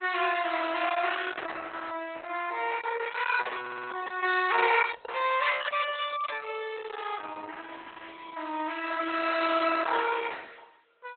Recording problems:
lossy codec; Opus, log-spectral distance 6 dB, nothing above 4 kHz
stutter; at 3.5 s

